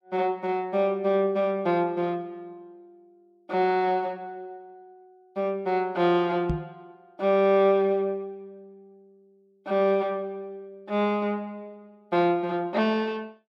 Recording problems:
microphone bump; at 6.5 s; peak +1 dB vs average level

